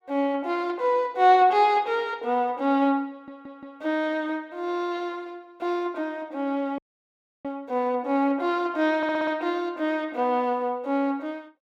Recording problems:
audio stuttering; at 3 s and at 9 s
audio cutting out; at 7 s for 0.5 s

